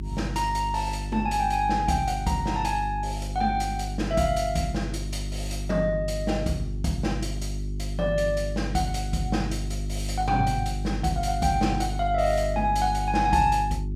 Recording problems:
electrical hum; 50 Hz, harmonics up to 400 Hz, SNR 6 dB

